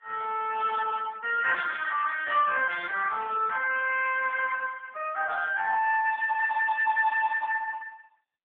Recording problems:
telephone audio; 390 Hz to 3.1 kHz, AMR-NB

